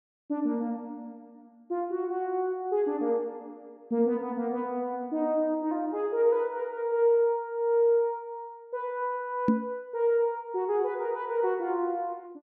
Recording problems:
knock on the microphone; at 9.5 s; peak +8 dB vs average level

